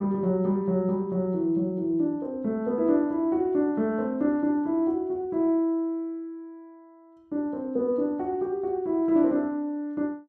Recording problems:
none

